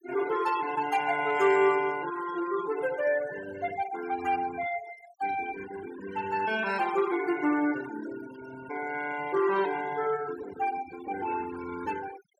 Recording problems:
denoising artefacts; signal-to-artefact ratio 13 dB

